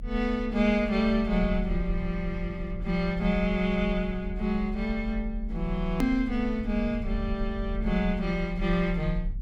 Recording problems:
rumble; below 50 Hz, strongest tone 34 Hz, SNR 8 dB
click at an edit; at 6 s

